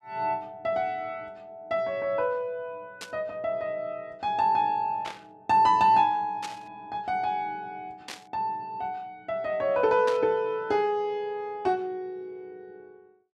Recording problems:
static burst; 5 times, first at 3 s; peak -5 dB vs average level

